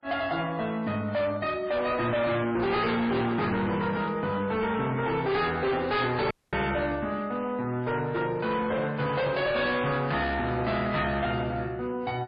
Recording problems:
codec artefacts; MP3, log-spectral distance 3 dB, nothing above 4.6 kHz
distortion; hard clipping, signal-to-distortion ratio 7 dB
dropout; at 6.5 s

